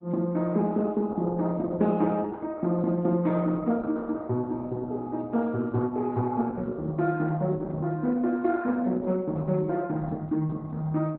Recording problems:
codec artefacts; Opus, log-spectral distance 3 dB, nothing above 3.9 kHz

